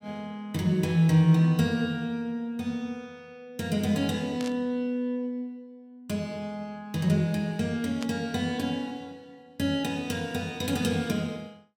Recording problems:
burst of static; at 4.5 s and at 8 s; peak -6 dB vs average level

